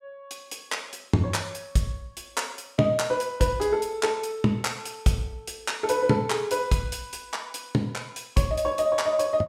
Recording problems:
none

